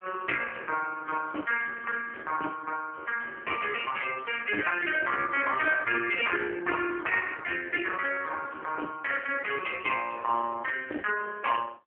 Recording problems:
phone line; 260 Hz to 3.1 kHz, AMR-NB

